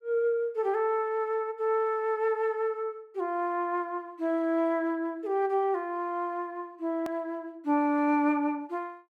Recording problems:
click at an edit; at 7 s

